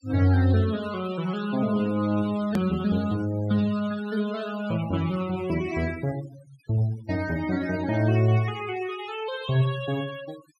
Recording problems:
denoising artefacts; signal-to-artefact ratio 17 dB
hard cut with a click; at 2.5 s

